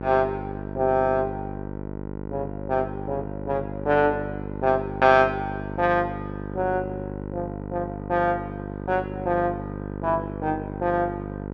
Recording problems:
hum; 50 Hz, harmonics up to 1.5 kHz, SNR 8 dB

